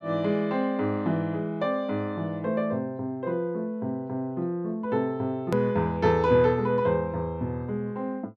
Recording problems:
click at an edit; at 5.5 s

